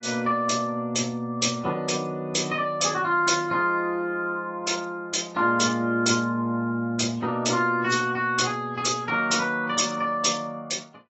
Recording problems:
lossy codec; AAC, log-spectral distance 4 dB, nothing above 7.8 kHz

